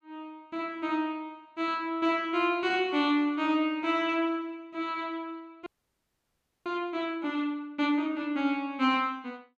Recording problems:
frozen audio; at 5.5 s for 1 s

